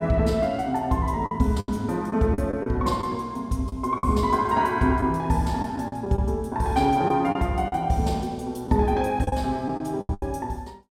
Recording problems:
packet loss; 8% of the sound replaced, filled with the last packet

